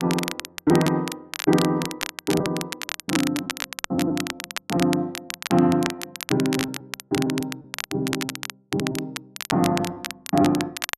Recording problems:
crackle; vinyl, SNR 7 dB
packet loss; 9% of the sound replaced, filled with repeated pitch periods

